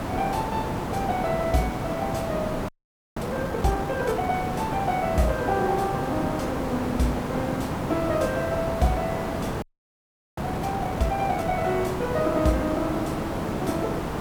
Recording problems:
hiss; slope -8 dB per octave, SNR 2 dB
frozen audio; at 2.5 s and at 9.5 s for 1 s

